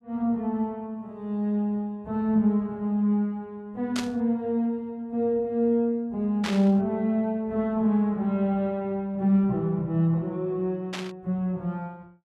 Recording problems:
burst of static; at 4 s, at 6.5 s and at 11 s; peak -2 dB vs average level

